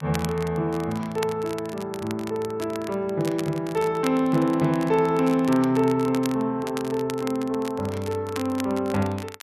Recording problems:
crackle; vinyl, SNR 16 dB

